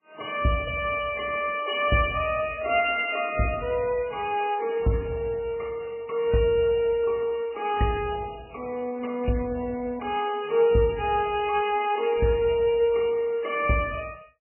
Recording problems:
codec artefacts; MP3, log-spectral distance 6 dB, nothing above 2.5 kHz

